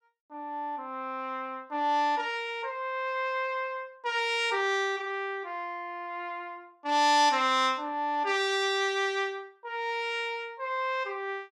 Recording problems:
none

